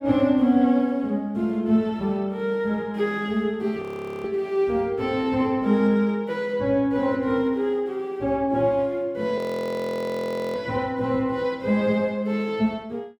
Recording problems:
audio freezing; at 4 s and at 9.5 s for 1 s

